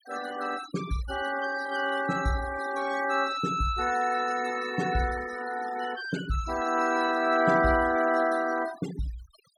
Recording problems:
noise reduction artefacts; signal-to-artefact ratio 14 dB

